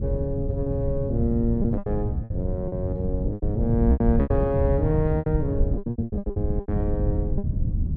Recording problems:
wind noise; below 120 Hz, SNR 0 dB
lost packets; 14% of the sound replaced, filled with repeated pitch periods

